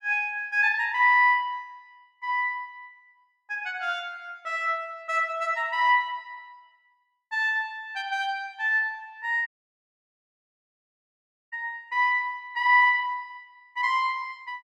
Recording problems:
dropout; at 9.5 s for 2 s

